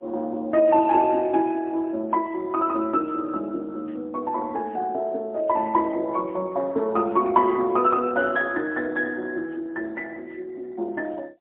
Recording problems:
phone line; 260 Hz to 3.6 kHz, AMR-NB, then MP3

